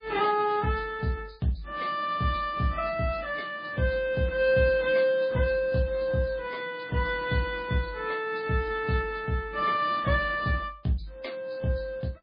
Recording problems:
codec artefacts; AAC, then MP3, log-spectral distance 3 dB, nothing above 4.6 kHz

